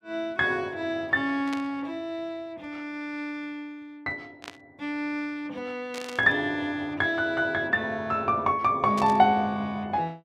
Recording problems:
static burst; 4 times, first at 1.5 s; peak -7 dB vs average level

